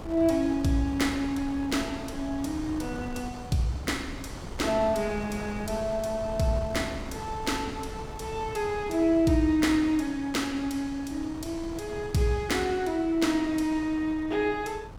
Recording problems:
wind noise; below 490 Hz, SNR 13 dB

